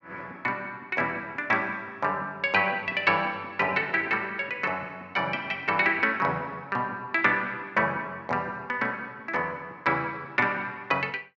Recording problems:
none

